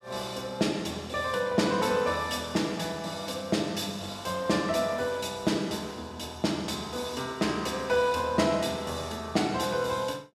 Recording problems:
none

